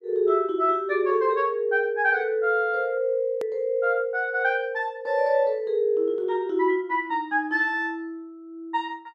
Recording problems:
click at an edit; at 3.5 s

